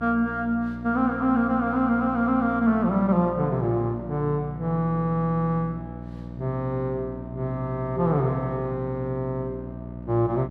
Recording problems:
mains hum; 60 Hz, harmonics up to 960 Hz, SNR 12 dB

